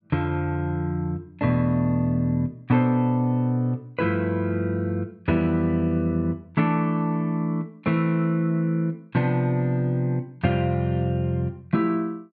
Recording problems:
none

